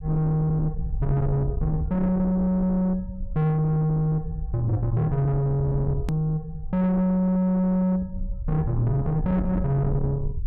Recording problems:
distorted audio; soft clipping, signal-to-distortion ratio 11 dB
low-frequency rumble; below 110 Hz, SNR 9 dB
edit click; at 6 s

